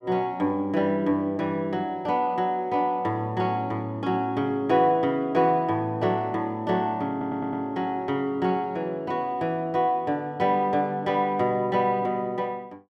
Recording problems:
stutter; at 7 s

